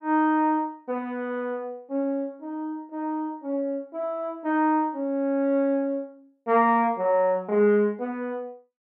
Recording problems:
none

